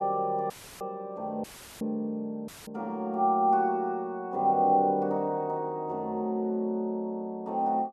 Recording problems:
audio cutting out; at 0.5 s, at 1.5 s and at 2.5 s; filled with static

